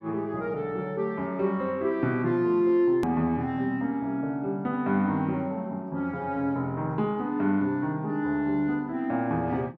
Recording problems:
hard cut with a click; at 3 s

